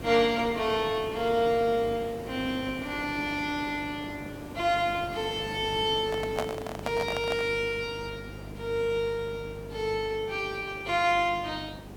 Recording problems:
hum; 50 Hz, harmonics up to 700 Hz, SNR 17 dB
background hiss; slope -7 dB per octave, SNR 14 dB
handling noise; from 6 to 7.5 s; peak +3 dB vs average level

